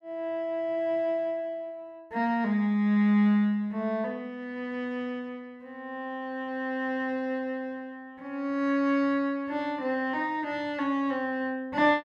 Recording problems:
none

